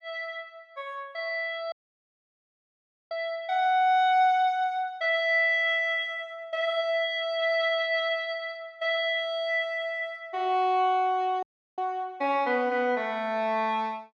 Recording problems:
dropout; at 1.5 s for 1.5 s and at 11 s

